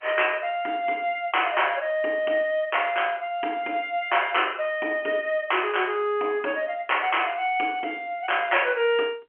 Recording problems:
phone line; 280 Hz to 3.2 kHz, G.711

